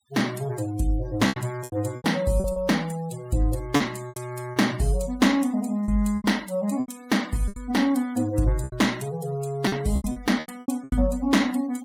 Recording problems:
noise reduction artefacts; signal-to-artefact ratio 20 dB
lost packets; 11% of the sound replaced, filled with repeated pitch periods

